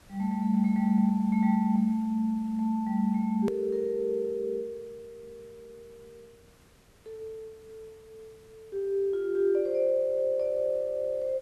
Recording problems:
background hiss; slope -4 dB per octave, SNR 30 dB
hard cut with a click; at 3.5 s

